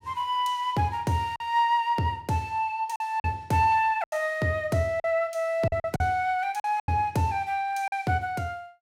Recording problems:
packet loss; 6% of the sound replaced, filled with silence

